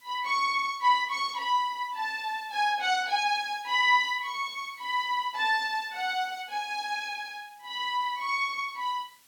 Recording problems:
background hiss; slope +1 dB per octave, SNR 29 dB

